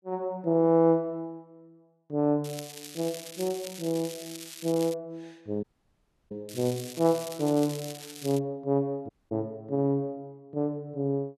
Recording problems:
crackling; from 2.5 to 5 s and from 6.5 to 8.5 s; loose cable, SNR 13 dB
dropout; at 5.5 s for 0.5 s and at 9 s

